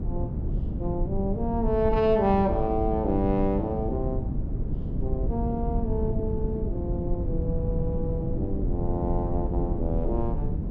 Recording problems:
rumble; below 150 Hz, SNR 2 dB

